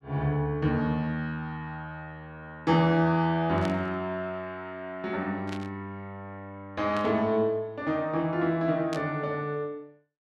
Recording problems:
static burst; 4 times, first at 3.5 s; peak -6 dB vs average level

